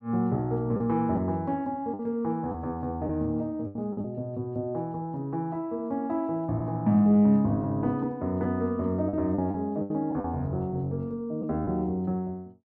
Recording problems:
packet loss; 4% of the sound replaced, filled with the last packet

